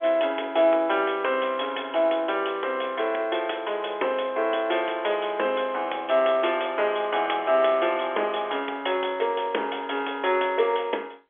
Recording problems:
phone line; 300 Hz to 3.4 kHz, G.711

